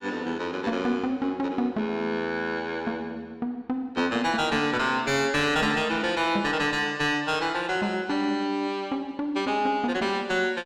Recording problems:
distortion; soft clipping, signal-to-distortion ratio 9 dB

